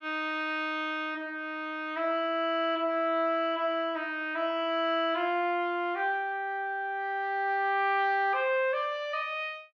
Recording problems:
none

